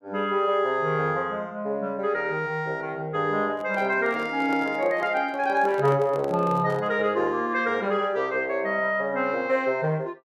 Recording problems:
handling noise; from 3.5 to 7 s; peak -8 dB vs average level

